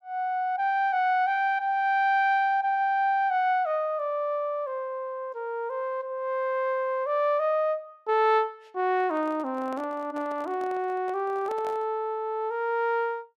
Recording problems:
microphone handling noise; from 9 to 12 s; peak -11 dB vs average level

